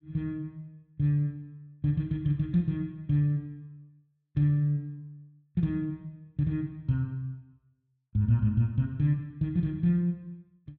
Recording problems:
none

